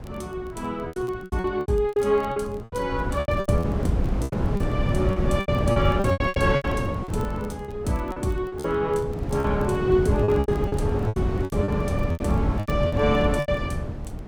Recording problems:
wind on the microphone; below 240 Hz, SNR 1 dB
crackle; vinyl, SNR 30 dB
lost packets; 16% of the sound replaced, filled with repeated pitch periods

